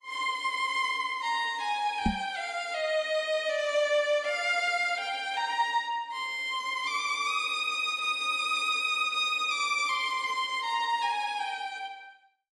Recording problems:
lossy compression; AAC, log-spectral distance 2 dB, nothing above 11.3 kHz
microphone thump; at 2 s; peak +4 dB vs average level

